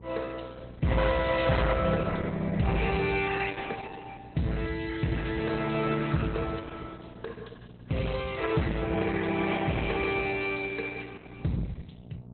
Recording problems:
lossy compression; Opus, log-spectral distance 6 dB, nothing above 4 kHz
distorted audio; hard clipping, signal-to-distortion ratio 11 dB
hum; 60 Hz, harmonics up to 720 Hz, SNR 17 dB

